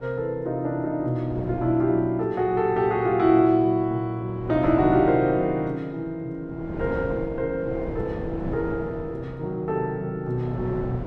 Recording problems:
wind on the microphone; below 490 Hz, SNR 12 dB

